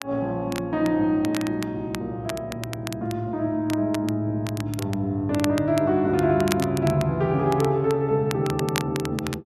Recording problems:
crackle; vinyl, SNR 13 dB

